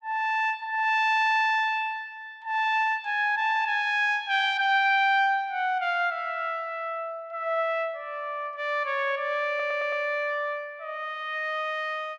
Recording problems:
stutter; at 9.5 s

